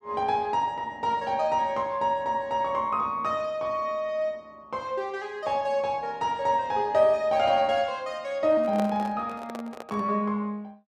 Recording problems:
microphone handling noise; from 8.5 to 10 s; peak -3 dB vs average level

